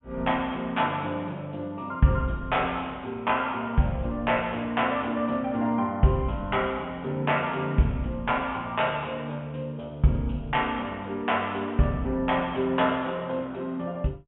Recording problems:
treble missing; nothing above 3.3 kHz

